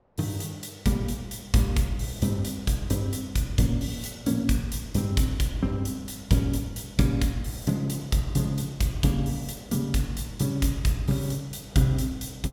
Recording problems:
wind noise; below 750 Hz, SNR 29 dB

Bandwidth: 17 kHz